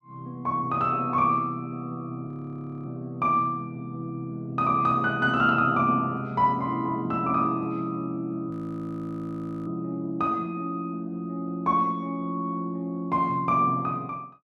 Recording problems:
audio freezing; at 2.5 s for 0.5 s and at 8.5 s for 1 s

